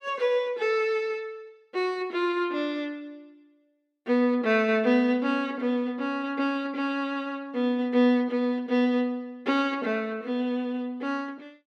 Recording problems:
none

